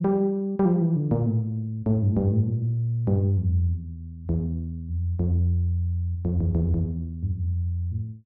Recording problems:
none

